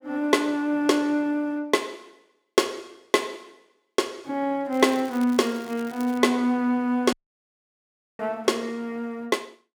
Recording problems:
crackling; from 4.5 to 6 s; loose cable, SNR 21 dB
dropout; at 7 s for 1 s

